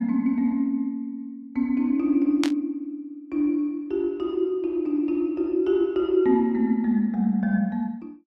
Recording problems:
static burst; at 2.5 s; peak 0 dB vs average level

